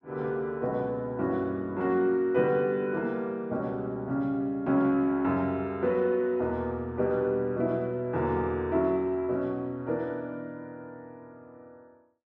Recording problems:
none

